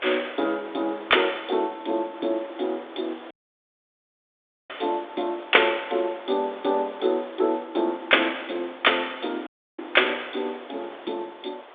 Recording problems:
phone line; 280 Hz to 3.6 kHz, G.726
background hiss; SNR 18 dB
dropout; at 3.5 s for 1.5 s and at 9.5 s

